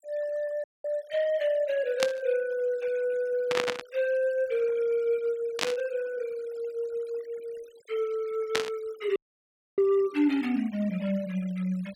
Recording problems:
noise reduction artefacts; signal-to-artefact ratio 23 dB
audio cutting out; at 0.5 s and at 9 s for 0.5 s
burst of static; 4 times, first at 2 s; peak +5 dB vs average level

